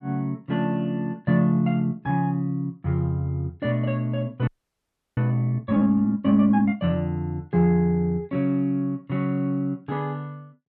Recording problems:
frozen audio; at 4.5 s for 0.5 s

